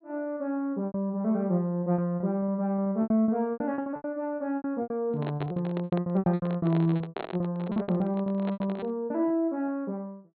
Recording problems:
treble cut off; nothing above 4.3 kHz
lost packets; 19% of the sound replaced, filled with repeated pitch periods
microphone handling noise; from 5 to 9 s; peak -3 dB vs average level

